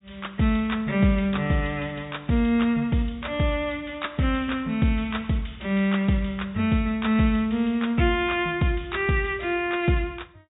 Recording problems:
treble missing; nothing above 4 kHz

